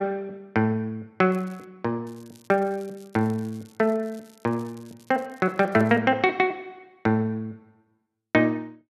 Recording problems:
crackle; at 1.5 s, from 2 to 5 s and at 5 s; loose cable, SNR 30 dB

